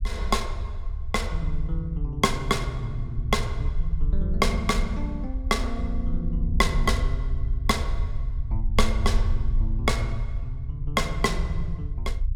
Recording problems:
rumble; below 64 Hz, SNR 1 dB

